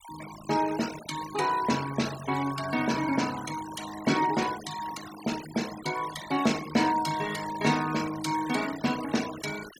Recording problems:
denoising artefacts; signal-to-artefact ratio 12 dB

